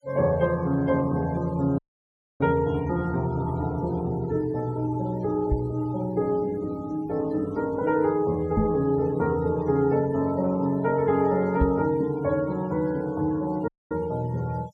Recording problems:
noise reduction artefacts; signal-to-artefact ratio 23 dB
audio cutting out; at 2 s for 0.5 s and at 14 s
microphone thump; at 5.5 s, at 8.5 s and at 12 s; peak +5 dB vs average level

